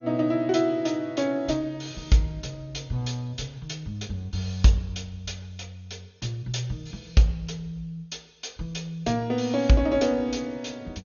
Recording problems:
lossy compression; MP2, log-spectral distance 4 dB, nothing above 6.7 kHz

